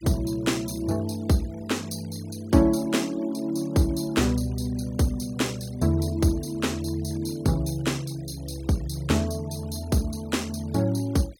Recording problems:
noise reduction artefacts; signal-to-artefact ratio 22 dB

